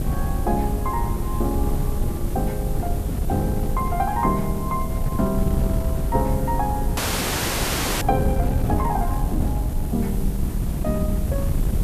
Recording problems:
hiss; slope +2 dB per octave, SNR 14 dB
wind noise; below 130 Hz, SNR -1 dB
frozen audio; at 7 s for 1 s

